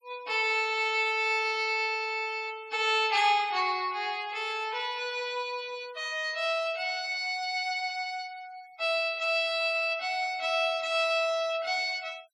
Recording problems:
noise reduction artefacts; signal-to-artefact ratio 25 dB

